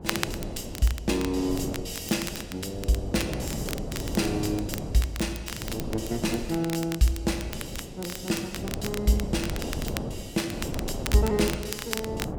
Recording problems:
wind on the microphone; below 420 Hz, SNR 7 dB
crackle; vinyl, SNR 9 dB

